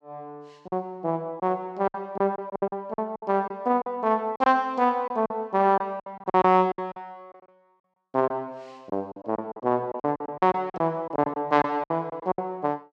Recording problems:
lost packets; 13% of the sound replaced, filled with silence

